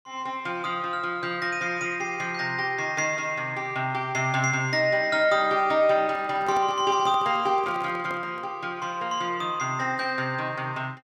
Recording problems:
microphone handling noise; from 6 to 8.5 s; peak -8 dB vs average level

